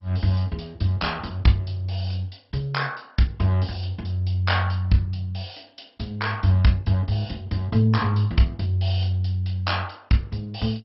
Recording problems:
lossy compression; MP2, log-spectral distance 5 dB, nothing above 5.5 kHz

